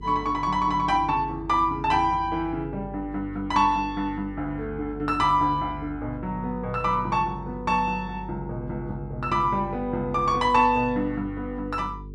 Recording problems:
hum; 50 Hz, harmonics up to 450 Hz, SNR 15 dB

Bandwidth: 12 kHz